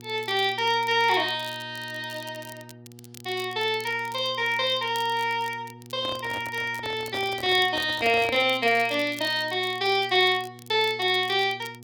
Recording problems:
hum; 60 Hz, harmonics up to 840 Hz, SNR 22 dB
crackling; vinyl, SNR 22 dB
microphone handling noise; from 6 to 8.5 s; peak -6 dB vs average level

